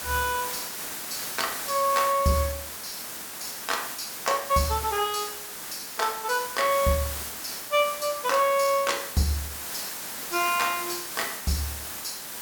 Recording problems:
hiss; slope -1 dB per octave, SNR 6 dB

